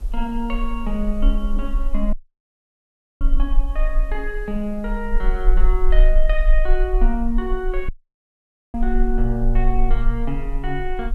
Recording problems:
hiss; SNR 23 dB
low-frequency rumble; below 36 Hz, strongest tone 26 Hz, SNR -3 dB
audio cutting out; at 2 s for 1 s and at 8 s for 1 s

